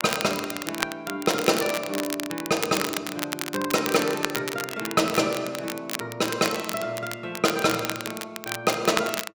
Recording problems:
crackling; vinyl, SNR 6 dB

